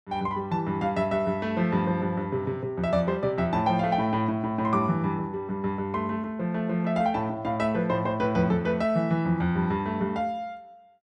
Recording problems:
none

